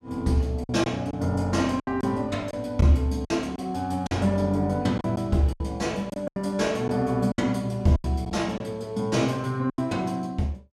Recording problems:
lost packets; 8% of the sound replaced, filled with silence

